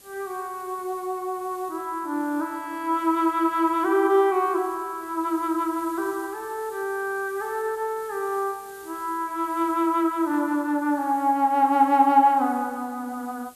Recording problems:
hiss; SNR 23 dB

